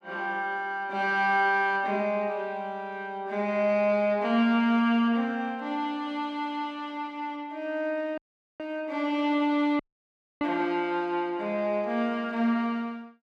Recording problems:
dropout; at 8 s and at 10 s for 0.5 s

